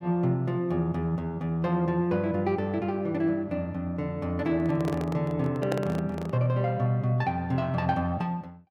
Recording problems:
handling noise; from 4.5 to 6.5 s; peak +2 dB vs average level

